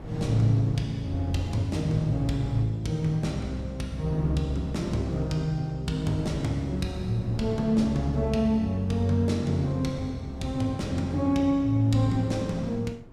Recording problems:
wind noise; below 330 Hz, SNR 16 dB

